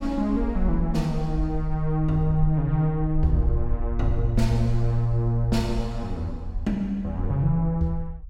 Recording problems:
rumble; below 52 Hz, SNR 7 dB

